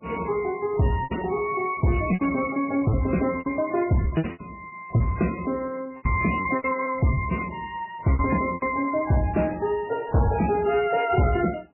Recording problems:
lossy compression; MP3, log-spectral distance 4 dB, nothing above 2.8 kHz
distorted audio; soft clipping, signal-to-distortion ratio 12 dB
lost packets; 11% of the sound replaced, filled with repeated pitch periods

